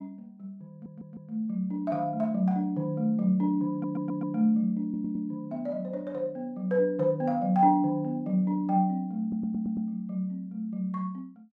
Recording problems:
audio stuttering; 4 times, first at 0.5 s

